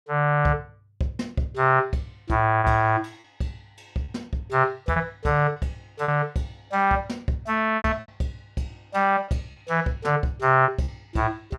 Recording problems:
lost packets; 5% of the sound replaced, filled with repeated pitch periods

